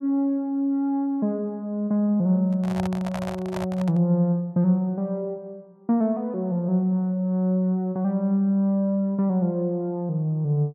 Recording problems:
microphone handling noise; from 2.5 to 4 s; peak -4 dB vs average level

